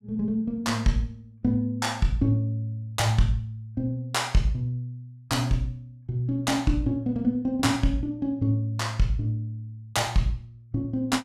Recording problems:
none

